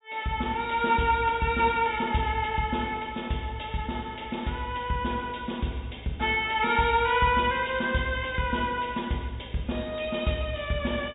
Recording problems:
treble missing; nothing above 4 kHz

